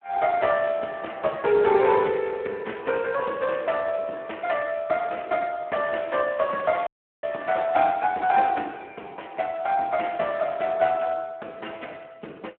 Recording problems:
phone line; 240 Hz to 3 kHz, Speex
dropout; at 7 s

